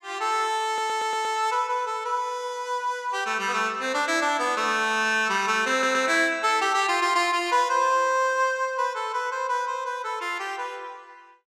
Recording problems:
audio stuttering; at 0.5 s and at 5.5 s

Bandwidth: 15.5 kHz